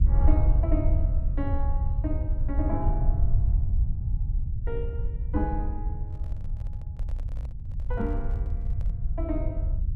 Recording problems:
rumble; below 76 Hz, SNR -7 dB
microphone handling noise; from 6 to 9 s; peak -11 dB vs average level

